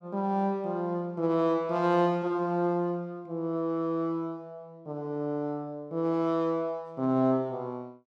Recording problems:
none

